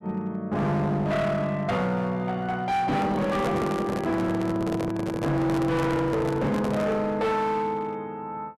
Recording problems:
distorted audio; hard clipping, uneven, signal-to-distortion ratio 7 dB
microphone handling noise; from 3 to 7 s; peak +1 dB vs average level

